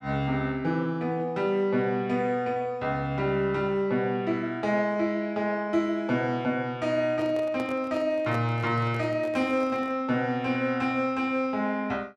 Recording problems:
handling noise; from 7 to 10 s; peak -7 dB vs average level

